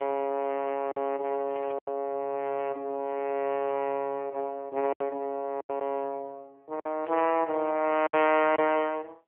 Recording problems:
telephone audio; 280 Hz to 3.3 kHz, AMR-NB
packet loss; 5% of the sound replaced, filled with silence
static burst; at 1.5 s and at 7 s; peak -14 dB vs average level

